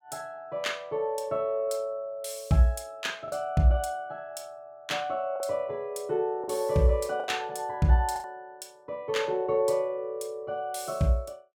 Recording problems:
lost packets; 3% of the sound replaced, filled with the last packet

